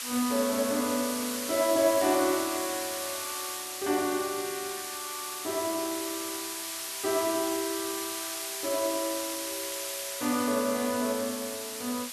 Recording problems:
hiss; slope +3 dB per octave, SNR 3 dB

